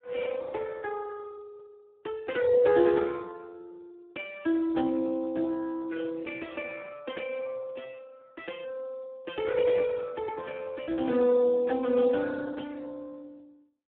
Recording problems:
telephone audio; 170 Hz to 3.4 kHz, Speex

